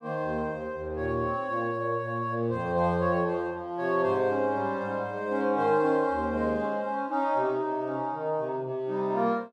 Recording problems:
none

